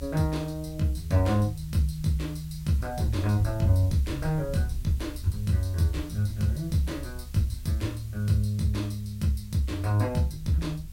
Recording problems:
background hiss; slope +1 dB per octave, SNR 25 dB
rumble; below 72 Hz, strongest tone 70 Hz, SNR 14 dB

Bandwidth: 16 kHz